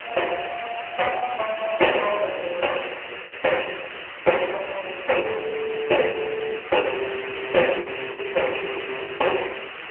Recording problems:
phone line; 300 Hz to 2.9 kHz, AMR-NB
hiss; SNR 10 dB
wind on the microphone; below 600 Hz, SNR 17 dB
lost packets; 8% of the sound replaced, filled with the last packet

